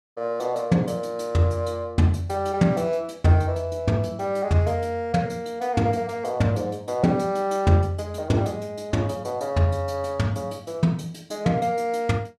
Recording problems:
none

